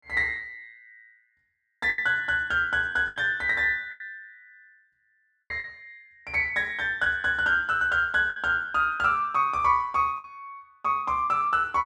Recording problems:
lost packets; 6% of the sound replaced, filled with the last packet

